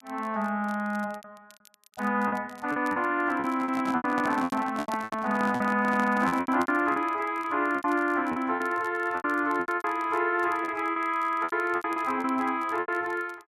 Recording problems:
crackle; vinyl, SNR 28 dB
packet loss; 13% of the sound replaced, filled with repeated pitch periods
handling noise; from 3.5 to 6.5 s; peak -3 dB vs average level

